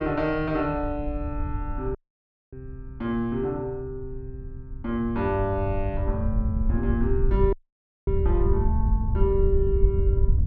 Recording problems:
wind on the microphone; below 80 Hz, SNR 0 dB
dropout; at 2 s for 0.5 s and at 7.5 s for 0.5 s

